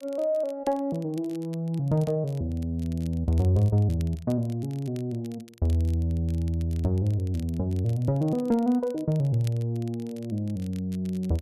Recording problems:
crackling; vinyl, SNR 26 dB

